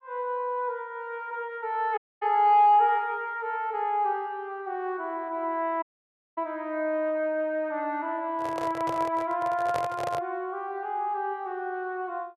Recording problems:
audio cutting out; at 2 s and at 6 s for 0.5 s
microphone handling noise; from 8.5 to 10 s; peak -2 dB vs average level

